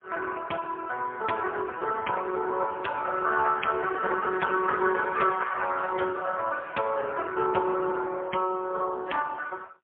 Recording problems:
phone line; 220 Hz to 3.3 kHz, AMR-NB, then MP3

